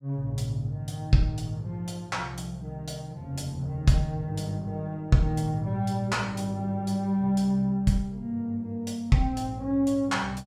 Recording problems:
none

